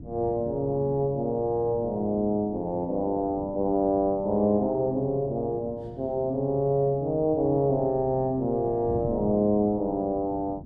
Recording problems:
wind on the microphone; below 250 Hz, SNR 16 dB

